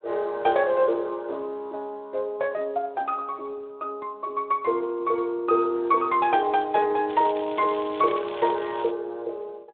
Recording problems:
phone line; 300 Hz to 4 kHz, Speex
crackle; from 7 to 9 s; loose cable, SNR 17 dB

